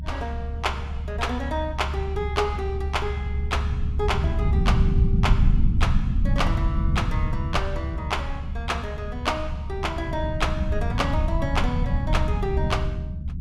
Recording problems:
low-frequency rumble; below 120 Hz, SNR -3 dB

